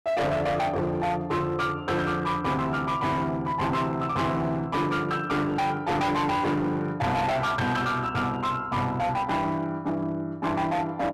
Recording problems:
distortion; hard clipping, signal-to-distortion ratio 8 dB

